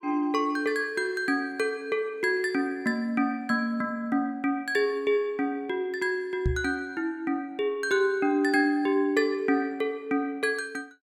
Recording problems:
knock on the microphone; at 6.5 s; peak +4 dB vs average level

